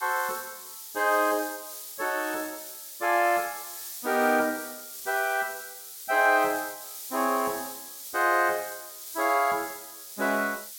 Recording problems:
background hiss; SNR 11 dB

